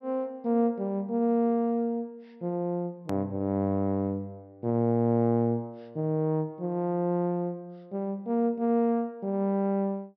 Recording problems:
treble missing; nothing above 5.5 kHz
hard cut with a click; at 3 s

